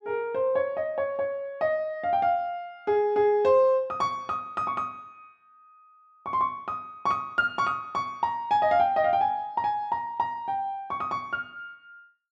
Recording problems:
none

